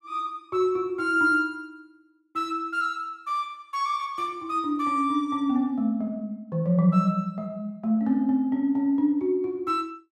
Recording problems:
none

